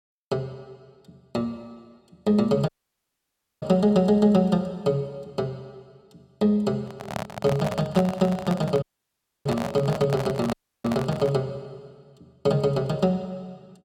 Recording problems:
audio cutting out; at 2.5 s for 1 s, at 9 s for 0.5 s and at 11 s
microphone handling noise; from 7 to 11 s; peak -1 dB vs average level

